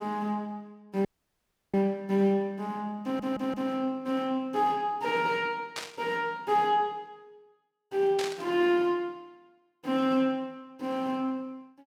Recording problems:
dropout; at 1 s for 0.5 s
audio stuttering; at 3 s
burst of static; at 6 s and at 8 s; peak -2 dB vs average level

